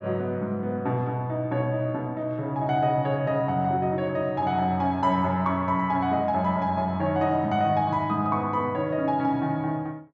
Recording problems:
none

